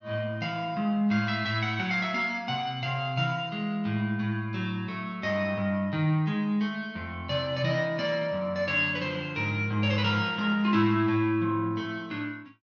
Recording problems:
none

